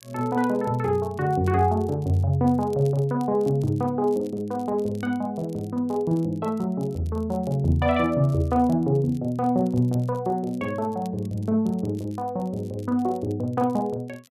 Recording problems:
crackle; vinyl, SNR 29 dB

